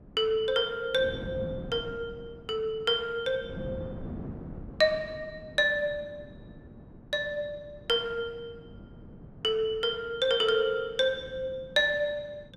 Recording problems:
wind noise; below 300 Hz, SNR 16 dB

